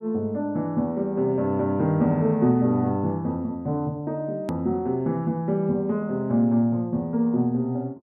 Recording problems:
click at an edit; at 4.5 s

